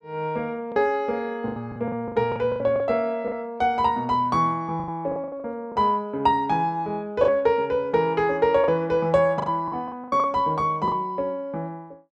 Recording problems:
packet loss; 10% of the sound replaced, filled with the last packet

